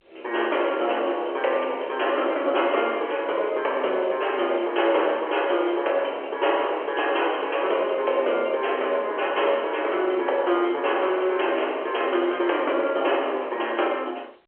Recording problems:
phone line; 320 Hz to 3.5 kHz, G.711

